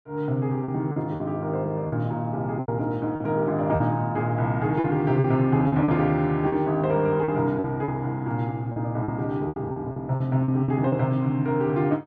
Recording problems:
lost packets; 9% of the sound replaced, filled with repeated pitch periods

